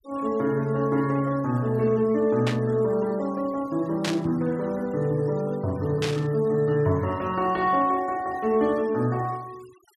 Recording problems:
denoising artefacts; signal-to-artefact ratio 26 dB
burst of static; at 2.5 s, at 4 s and at 6 s; peak -1 dB vs average level

